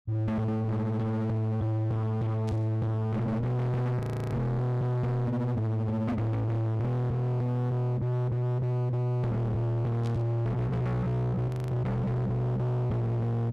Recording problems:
distorted audio; hard clipping, signal-to-distortion ratio 7 dB
burst of static; at 2.5 s and at 10 s; peak -14 dB vs average level
audio freezing; at 4 s and at 11 s

